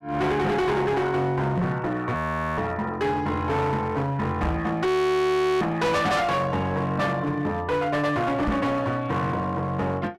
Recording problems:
distortion; hard clipping, uneven, signal-to-distortion ratio 7 dB
microphone bump; at 1.5 s, at 4.5 s and at 8.5 s; peak +4 dB vs average level
audio freezing; at 2 s and at 5 s for 0.5 s

